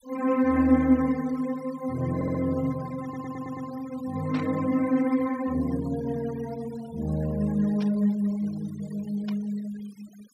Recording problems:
noise reduction artefacts; signal-to-artefact ratio 21 dB
audio stuttering; at 2 s and at 3 s
static burst; at 4.5 s, at 8 s and at 9.5 s; peak -10 dB vs average level

